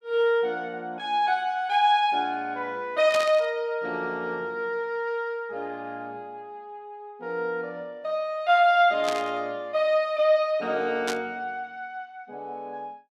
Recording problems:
burst of static; at 3 s, at 9 s and at 11 s; peak -1 dB vs average level

